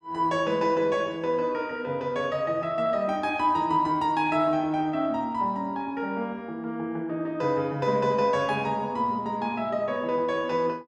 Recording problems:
none

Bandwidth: 12 kHz